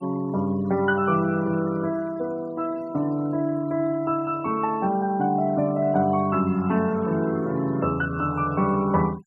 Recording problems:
noise reduction artefacts; signal-to-artefact ratio 23 dB

